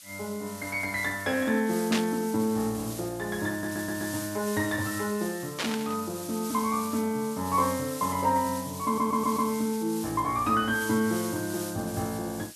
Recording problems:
hiss; SNR 11 dB
static burst; at 2 s and at 5.5 s; peak +3 dB vs average level
stutter; at 3.5 s and at 9 s

